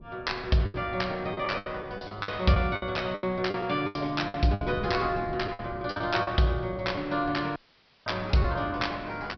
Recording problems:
low-pass filter; nothing above 5.5 kHz
wind noise; below 250 Hz, SNR 17 dB
packet loss; 11% of the sound replaced, filled with the last packet
dropout; at 7.5 s for 0.5 s

